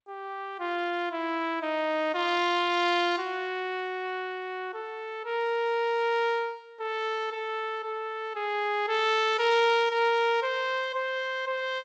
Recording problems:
lossy compression; G.722, log-spectral distance 2 dB, nothing above 7.6 kHz

